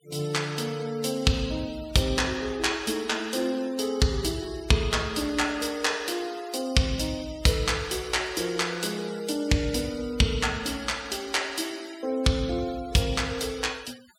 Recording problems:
denoising artefacts; signal-to-artefact ratio 19 dB

